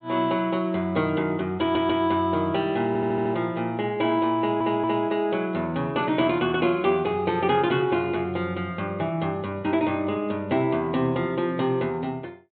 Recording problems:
low-pass filter; nothing above 4 kHz
audio stuttering; at 1.5 s, at 3 s and at 4.5 s

